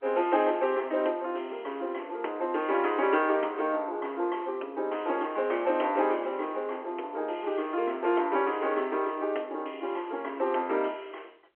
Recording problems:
telephone audio; 280 Hz to 3.2 kHz, G.711

